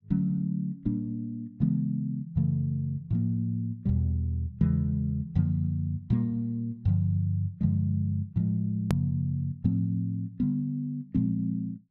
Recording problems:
click at an edit; at 9 s

